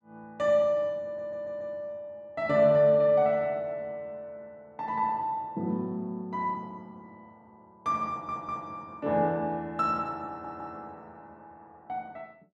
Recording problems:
stutter; at 1 s, at 8 s and at 10 s

